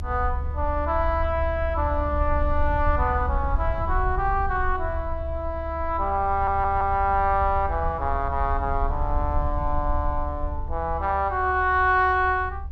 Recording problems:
low-frequency rumble; below 72 Hz, SNR 6 dB
stutter; at 6.5 s

